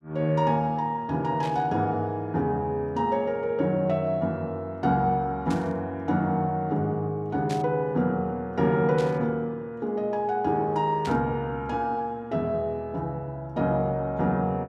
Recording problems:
static burst; 5 times, first at 1.5 s; peak -8 dB vs average level

